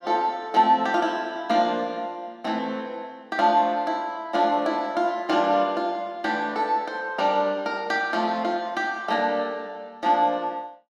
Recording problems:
none

